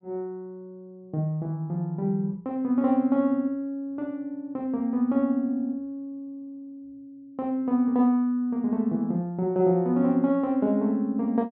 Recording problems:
none

